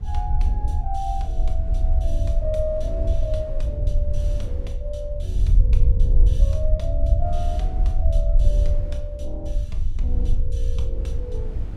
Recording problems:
low-frequency rumble; below 62 Hz, SNR -9 dB
wind on the microphone; below 250 Hz, SNR 11 dB

